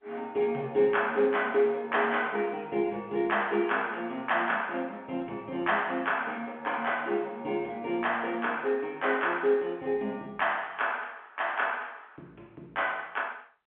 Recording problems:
telephone audio; 240 Hz to 3.3 kHz, G.711

